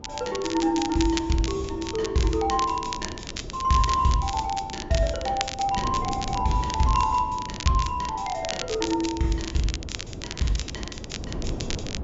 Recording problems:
treble cut off; nothing above 7.4 kHz
wind noise; below 320 Hz, SNR 12 dB
crackle; vinyl, SNR 10 dB

